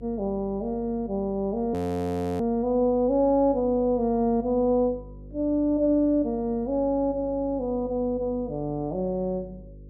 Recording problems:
electrical hum; 50 Hz, harmonics up to 550 Hz, SNR 19 dB
audio freezing; at 1.5 s for 0.5 s

